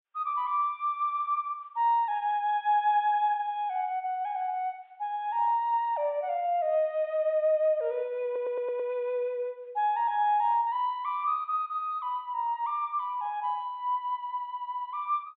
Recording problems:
treble cut off; nothing above 4 kHz
stutter; at 8.5 s

